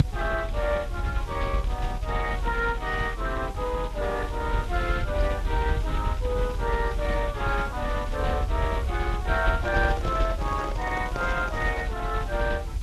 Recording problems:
lossy compression; Speex, log-spectral distance 2 dB
hiss; SNR 21 dB
rumble; below 78 Hz, strongest tone 42 Hz, SNR 3 dB
microphone handling noise; from 9.5 to 12 s; peak -3 dB vs average level

